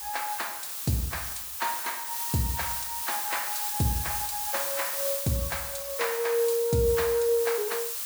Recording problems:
background hiss; SNR 1 dB

